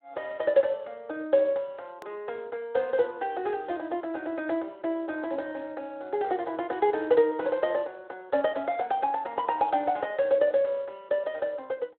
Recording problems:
phone line; 280 Hz to 3.7 kHz, Speex
hard cut with a click; at 2 s

